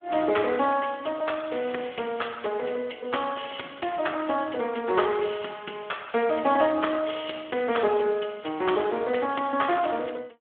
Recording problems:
phone line; 240 Hz to 3.5 kHz, Speex

